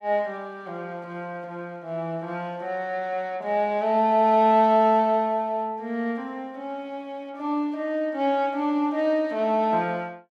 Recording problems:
none

